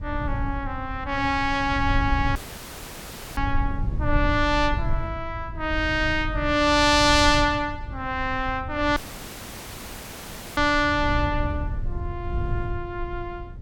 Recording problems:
rumble; below 100 Hz, SNR 8 dB
dropout; at 2.5 s for 1 s and at 9 s for 1.5 s

